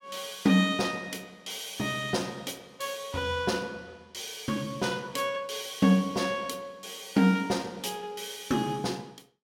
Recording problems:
none

